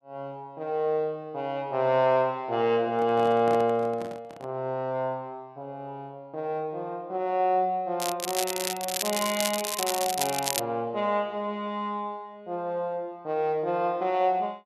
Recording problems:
handling noise; from 3 to 4.5 s; peak -5 dB vs average level
crackling; from 8 to 11 s; loose cable, SNR 3 dB

